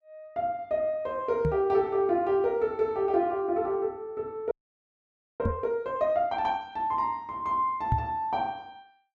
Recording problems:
knock on the microphone; at 1.5 s, at 5.5 s and at 8 s; peak +4 dB vs average level
frozen audio; at 4.5 s for 1 s

